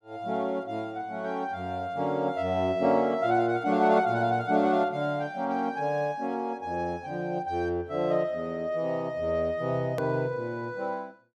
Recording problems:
hard cut with a click; at 10 s

